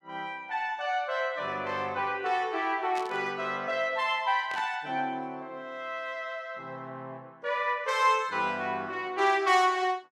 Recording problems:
static burst; at 3 s and at 4.5 s; peak -9 dB vs average level

